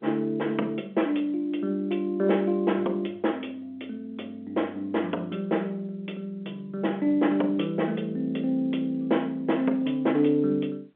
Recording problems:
telephone audio; 220 Hz to 3.4 kHz, G.711

